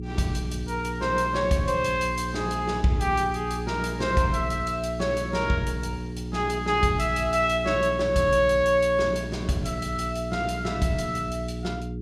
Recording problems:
electrical hum; 60 Hz, harmonics up to 420 Hz, SNR 8 dB

